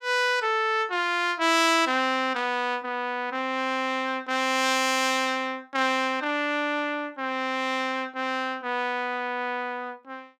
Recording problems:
none

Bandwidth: 17 kHz